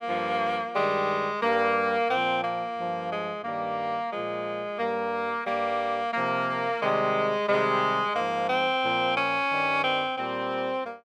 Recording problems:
none

